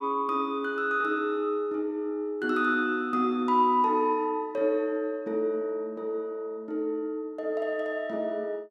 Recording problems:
none

